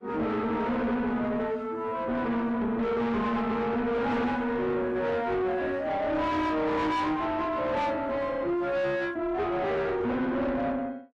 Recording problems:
lossy codec; AAC, log-spectral distance 2 dB
distorted audio; soft clipping, signal-to-distortion ratio 6 dB

